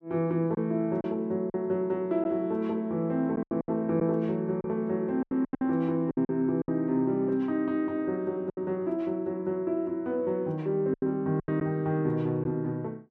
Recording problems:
packet loss; 7% of the sound replaced, filled with silence

